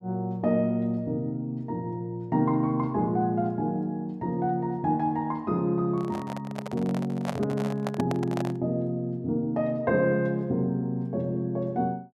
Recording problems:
handling noise; from 6 to 8.5 s; peak 0 dB vs average level

